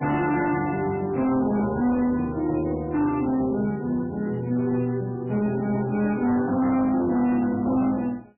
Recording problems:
codec artefacts; MP3, log-spectral distance 3 dB, nothing above 2.7 kHz
distortion; hard clipping, signal-to-distortion ratio 11 dB

